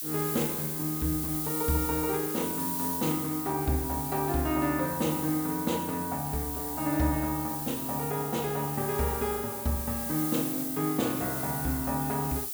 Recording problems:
background hiss; slope +4 dB per octave, SNR 2 dB

